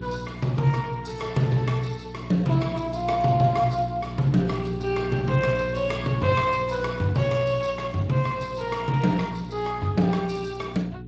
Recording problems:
codec artefacts; MP3, then Speex, log-spectral distance 4 dB
hum; 60 Hz, harmonics up to 420 Hz, SNR 11 dB

